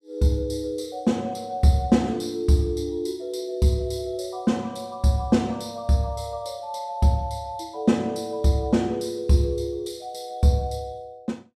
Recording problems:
none

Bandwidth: 15 kHz